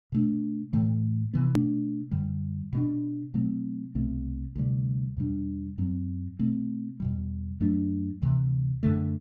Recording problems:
edit click; at 1.5 s

